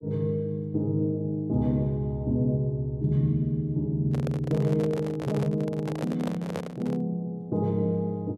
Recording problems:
microphone handling noise; from 4 to 7 s; peak -2 dB vs average level

